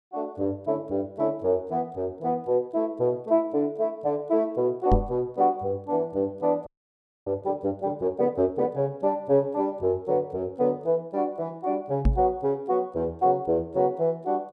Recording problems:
microphone thump; at 5 s and at 12 s; peak +7 dB vs average level
frozen audio; at 6.5 s for 0.5 s

